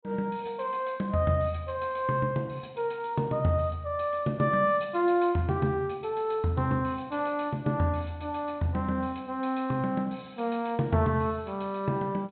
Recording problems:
treble missing; nothing above 4 kHz

